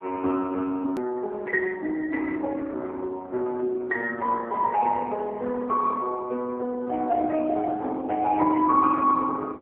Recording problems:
phone line; 220 Hz to 3.4 kHz, AMR-NB
edit click; at 1 s

